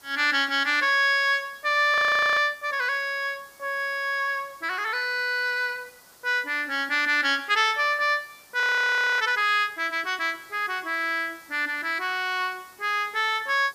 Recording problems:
background hiss; SNR 27 dB
audio freezing; at 2 s and at 8.5 s for 0.5 s

